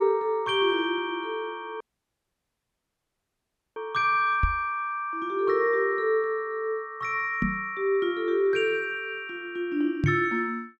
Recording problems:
audio cutting out; at 2 s for 2 s
knock on the microphone; at 4.5 s, at 7.5 s and at 10 s; peak +5 dB vs average level

